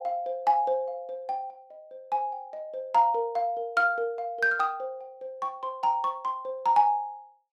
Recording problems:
none

